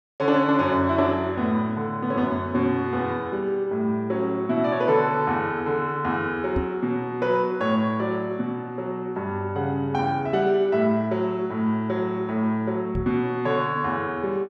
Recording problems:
microphone thump; at 6.5 s and at 13 s; peak 0 dB vs average level

